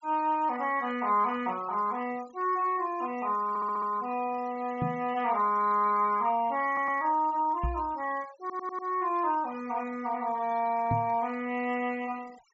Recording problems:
treble cut off; nothing above 8 kHz
noise reduction artefacts; signal-to-artefact ratio 23 dB
audio stuttering; at 3.5 s, at 6.5 s and at 8.5 s
microphone bump; at 5 s, at 7.5 s and at 11 s; peak +1 dB vs average level

